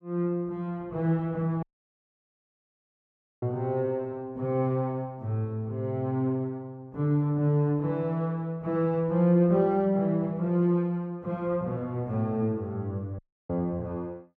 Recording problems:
dropout; at 1.5 s for 2 s and at 13 s

